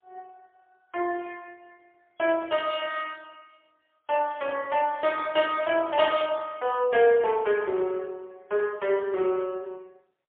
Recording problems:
phone line; 340 Hz to 3.5 kHz, AMR-NB, then MP3

